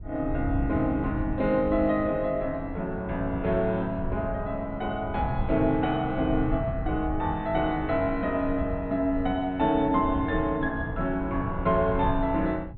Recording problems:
low-pass filter; nothing above 4.2 kHz
rumble; below 110 Hz, SNR 9 dB

